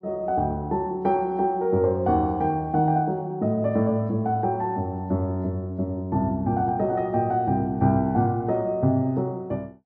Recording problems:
none

